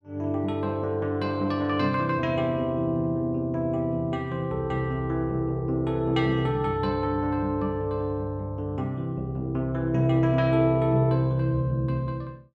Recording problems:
none

